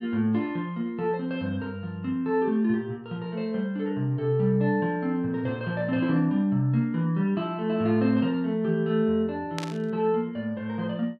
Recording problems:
burst of static; at 9.5 s; peak -4 dB vs average level

